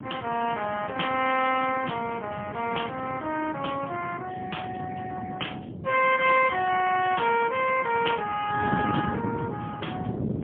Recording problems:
telephone audio; 280 Hz to 3.2 kHz, AMR-NB, then MP3
wind noise; below 350 Hz, SNR 9 dB

